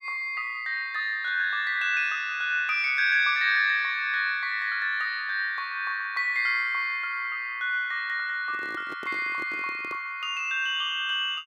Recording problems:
microphone handling noise; from 8.5 to 10 s; peak -12 dB vs average level

